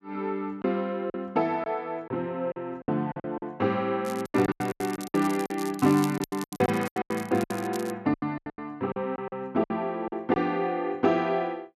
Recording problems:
lost packets; 14% of the sound replaced, filled with silence
crackling; from 4 to 8 s; loose cable, SNR 16 dB

